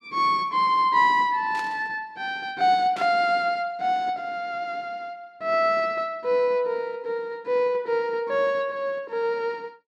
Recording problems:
static burst; at 1.5 s and at 3 s; peak -10 dB vs average level

